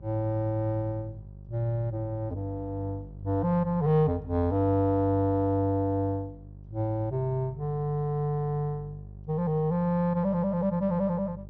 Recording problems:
low-pass filter; nothing above 6.3 kHz
hum; 50 Hz, harmonics up to 600 Hz, SNR 17 dB

